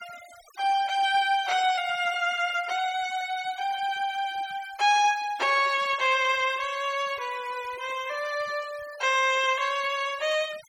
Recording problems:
noise reduction artefacts; signal-to-artefact ratio 19 dB

